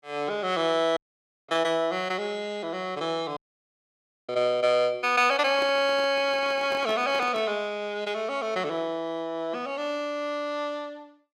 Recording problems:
dropout; at 1 s for 0.5 s and at 3.5 s for 1 s
microphone handling noise; from 5.5 to 7.5 s; peak -7 dB vs average level

